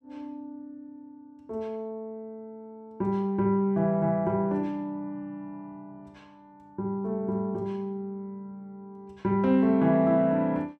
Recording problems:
none

